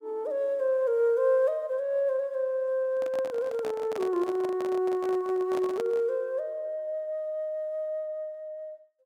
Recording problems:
microphone handling noise; from 3 to 6 s; peak -5 dB vs average level

